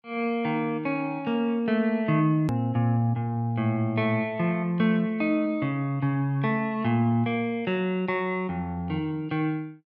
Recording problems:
edit click; at 2.5 s

